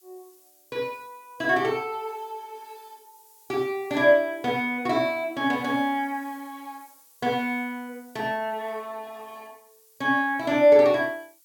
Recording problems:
hiss; slope +5 dB per octave, SNR 30 dB

